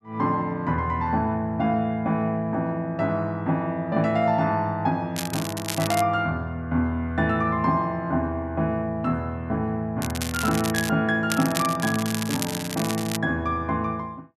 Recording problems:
crackling; at 5 s, at 10 s and from 11 to 13 s; loose cable, SNR 7 dB

